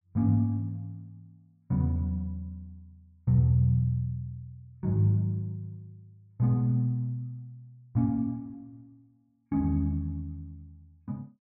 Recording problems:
none

